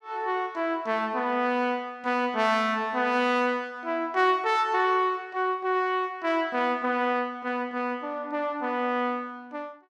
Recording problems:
none

